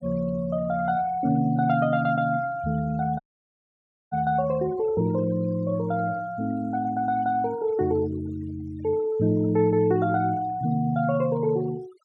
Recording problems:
denoising artefacts; signal-to-artefact ratio 24 dB
dropout; at 3 s for 1 s

